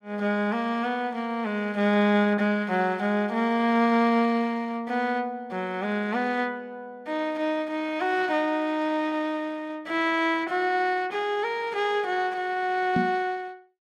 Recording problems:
knock on the microphone; at 13 s; peak +3 dB vs average level

